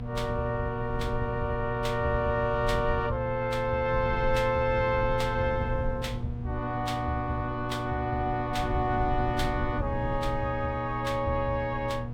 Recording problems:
hum; 60 Hz, harmonics up to 960 Hz, SNR 7 dB
low-frequency rumble; below 110 Hz, SNR 9 dB

